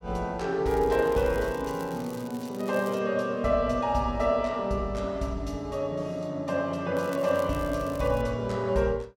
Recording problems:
crackle; from 0.5 to 3 s and from 7 to 8 s; loose cable, SNR 21 dB

